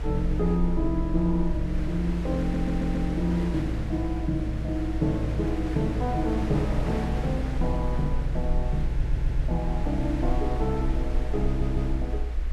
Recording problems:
rumble; below 58 Hz, SNR 3 dB
wind noise; below 950 Hz, SNR 11 dB
stutter; at 2.5 s, at 9 s and at 11 s

